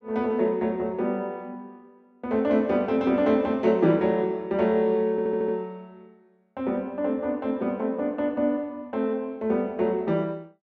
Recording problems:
audio stuttering; at 5 s

